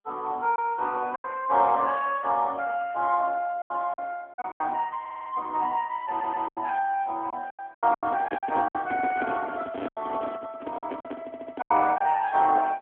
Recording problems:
telephone audio; 240 Hz to 3.5 kHz, AMR-NB
packet loss; 9% of the sound replaced, filled with silence
audio stuttering; at 5 s, at 6 s and at 11 s
microphone handling noise; from 8 to 12 s; peak -1 dB vs average level

